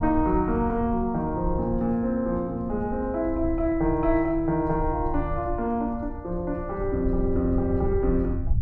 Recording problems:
rumble; below 76 Hz, SNR 9 dB

